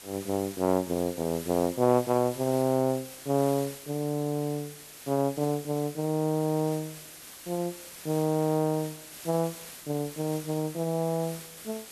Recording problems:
hiss; slope -1 dB per octave, SNR 14 dB

